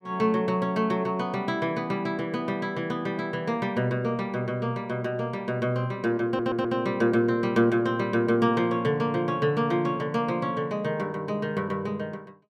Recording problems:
audio stuttering; at 6.5 s

